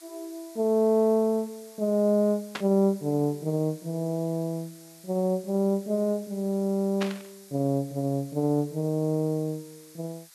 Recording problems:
background hiss; SNR 23 dB
burst of static; at 2.5 s and at 7 s; peak -2 dB vs average level

